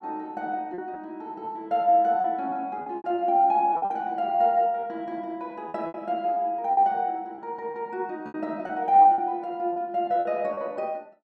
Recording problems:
packet loss; 9% of the sound replaced, filled with repeated pitch periods

